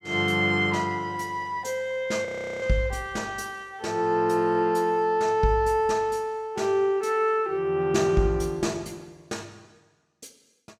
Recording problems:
audio freezing; at 2.5 s

